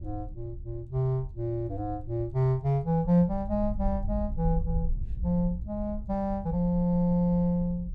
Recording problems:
wind on the microphone; below 70 Hz, SNR 10 dB

